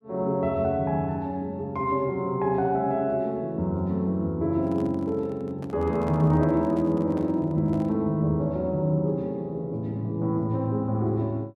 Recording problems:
microphone handling noise; from 4.5 to 8 s; peak -12 dB vs average level

